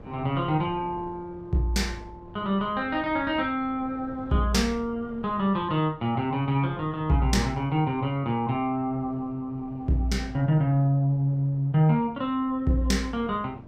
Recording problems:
wind on the microphone; below 390 Hz, SNR 21 dB

